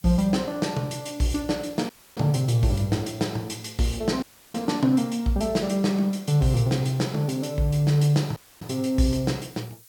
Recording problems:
hiss; slope +4 dB per octave, SNR 26 dB
audio cutting out; at 2 s, at 4 s and at 8.5 s

